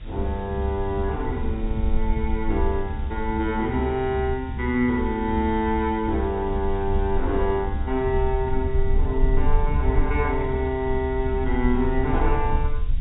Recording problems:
treble cut off; nothing above 4 kHz
hiss; SNR 26 dB
rumble; below 46 Hz, strongest tone 18 Hz, SNR 6 dB

